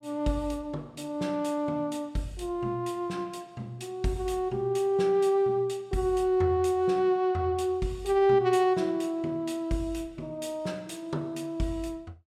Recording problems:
none

